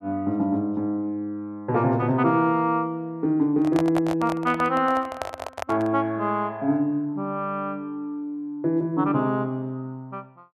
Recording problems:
microphone handling noise; from 3.5 to 6 s; peak 0 dB vs average level

